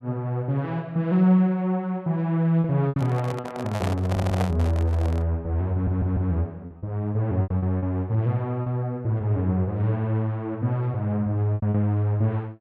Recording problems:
packet loss; 5% of the sound replaced, filled with repeated pitch periods
handling noise; from 3 to 5 s; peak -1 dB vs average level
audio stuttering; at 4 s and at 5.5 s

